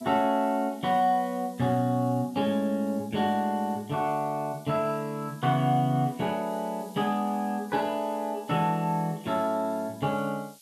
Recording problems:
hiss; slope +8 dB per octave, SNR 25 dB

